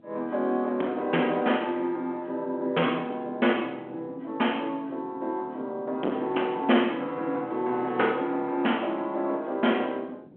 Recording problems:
phone line; 240 Hz to 3.3 kHz, G.726
distorted audio; hard clipping, signal-to-distortion ratio 13 dB
wind on the microphone; below 610 Hz, SNR 23 dB

